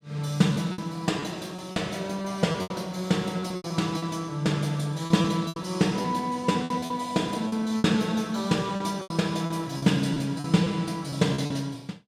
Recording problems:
lost packets; 10% of the sound replaced, filled with repeated pitch periods

